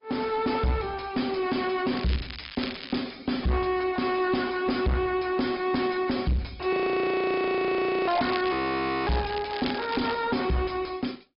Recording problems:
treble missing; nothing above 5.2 kHz
codec artefacts; Opus, log-spectral distance 5 dB
distorted audio; soft clipping, signal-to-distortion ratio 7 dB
crackle; from 2 to 3 s and from 8 to 10 s; loose cable, SNR 12 dB
audio freezing; at 6.5 s for 1.5 s and at 8.5 s for 0.5 s

